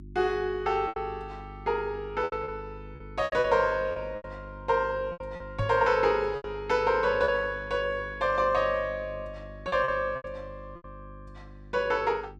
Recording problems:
electrical hum; 50 Hz, harmonics up to 350 Hz, SNR 18 dB
packet loss; 8% of the sound replaced, filled with repeated pitch periods
microphone bump; at 5.5 s; peak 0 dB vs average level

